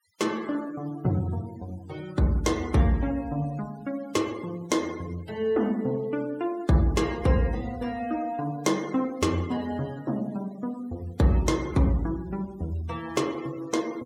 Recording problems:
denoising artefacts; signal-to-artefact ratio 21 dB

